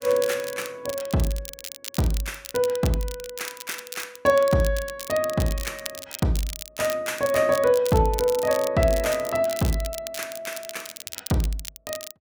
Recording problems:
crackle; vinyl, SNR 12 dB

